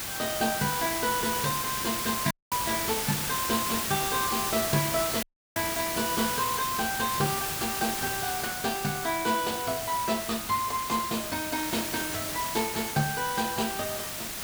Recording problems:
background hiss; slope -1 dB per octave, SNR 1 dB
dropout; at 2.5 s and at 5 s

